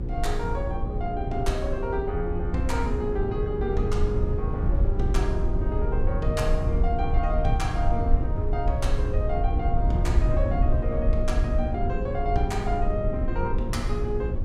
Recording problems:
hum; 60 Hz, harmonics up to 540 Hz, SNR 7 dB
rumble; below 74 Hz, SNR -2 dB

